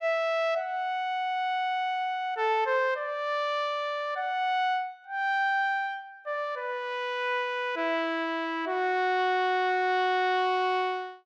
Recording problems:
none

